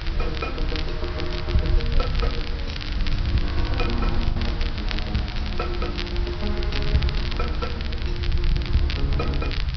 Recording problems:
treble cut off; nothing above 5.5 kHz
background hiss; SNR 8 dB
rumble; below 70 Hz, SNR -2 dB
crackling; vinyl, SNR 5 dB
packet loss; 1.7% of the sound replaced, filled with the last packet

